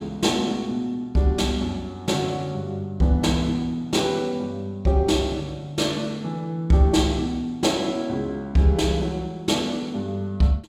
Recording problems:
none

